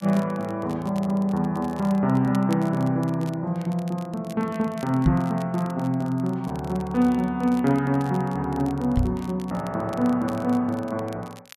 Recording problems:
crackle; vinyl, SNR 24 dB
microphone thump; at 5 s and at 9 s; peak +7 dB vs average level

